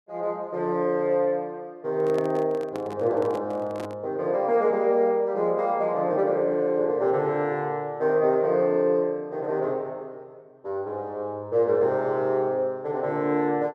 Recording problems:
microphone handling noise; from 2 to 4 s; peak -7 dB vs average level

